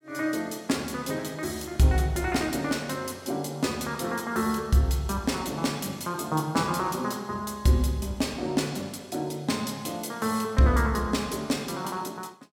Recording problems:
none

